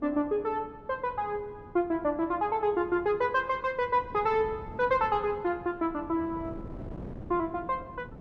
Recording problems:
wind noise; below 350 Hz, SNR 17 dB

